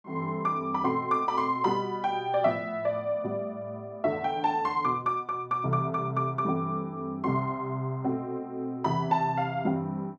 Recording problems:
none

